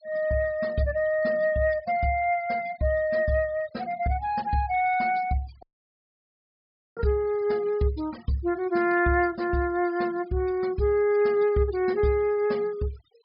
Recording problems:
treble cut off; nothing above 5.5 kHz
denoising artefacts; signal-to-artefact ratio 24 dB
audio cutting out; at 5.5 s for 1.5 s

